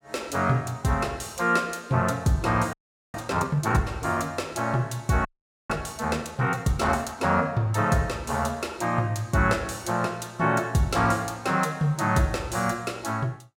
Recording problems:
frozen audio; at 2.5 s and at 5.5 s

